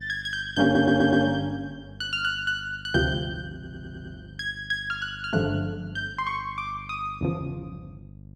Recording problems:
hum; 50 Hz, harmonics up to 550 Hz, SNR 19 dB
audio stuttering; at 0.5 s and at 3.5 s

